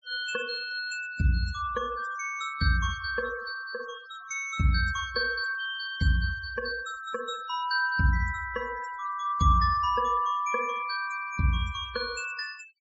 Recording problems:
treble missing; nothing above 8 kHz
denoising artefacts; signal-to-artefact ratio 17 dB

